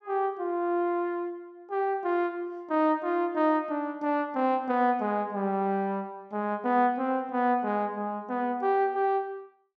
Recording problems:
none

